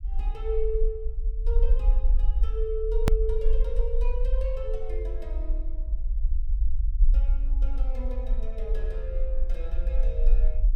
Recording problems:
low-frequency rumble; below 44 Hz, strongest tone 22 Hz, SNR -8 dB
click at an edit; at 3 s

